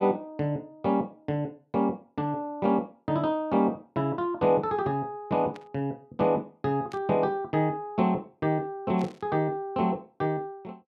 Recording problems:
static burst; at 5.5 s, at 7 s and at 9 s; peak -14 dB vs average level

